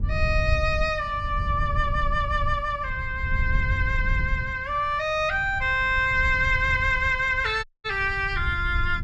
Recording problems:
wind noise; below 88 Hz, SNR 7 dB
dropout; at 7.5 s

